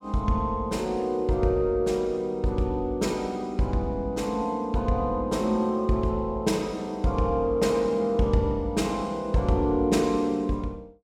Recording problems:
none

